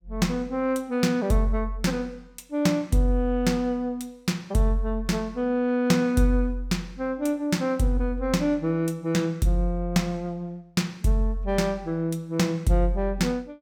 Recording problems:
none

